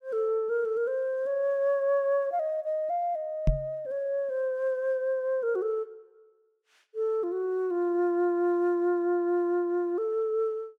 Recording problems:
knock on the microphone; at 3.5 s; peak +6 dB vs average level

